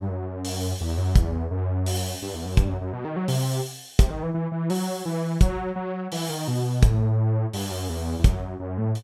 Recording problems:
none

